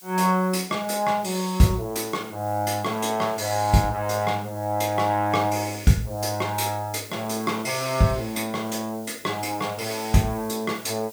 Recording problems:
hiss; SNR 19 dB

